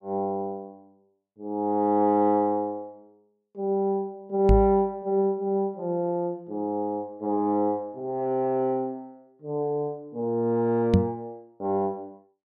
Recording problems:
microphone thump; at 4.5 s and at 11 s; peak +10 dB vs average level

